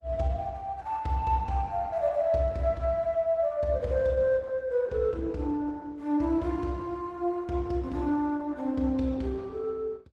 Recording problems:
codec artefacts; Opus, log-spectral distance 2 dB

